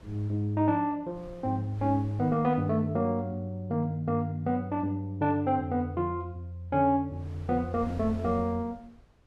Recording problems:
wind on the microphone; below 380 Hz, SNR 21 dB

